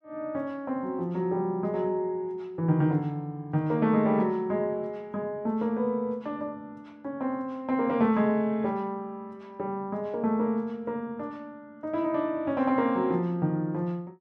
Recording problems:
none

